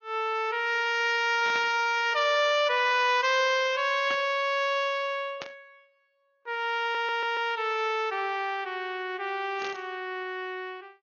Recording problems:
treble missing; nothing above 6 kHz
lossy compression; AAC, log-spectral distance 2 dB
static burst; 4 times, first at 1.5 s; peak -7 dB vs average level
stutter; at 7 s

